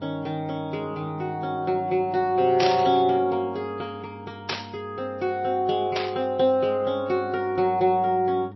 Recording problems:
codec artefacts; MP3, log-spectral distance 2 dB, nothing above 5 kHz
mains hum; 50 Hz, harmonics up to 800 Hz, SNR 20 dB
burst of static; at 2.5 s, at 4.5 s and at 6 s; peak 0 dB vs average level

